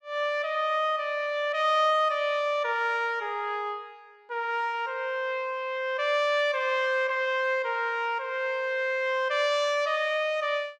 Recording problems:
none

